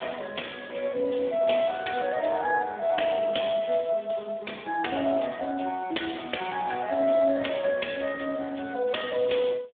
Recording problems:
telephone audio; 240 Hz to 3.4 kHz, Speex

